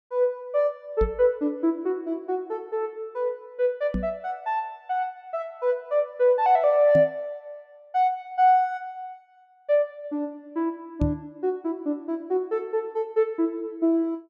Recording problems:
microphone thump; 4 times, first at 1 s; peak +3 dB vs average level

